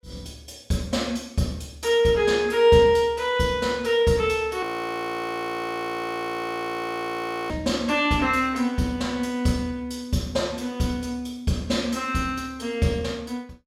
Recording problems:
audio freezing; at 4.5 s for 3 s

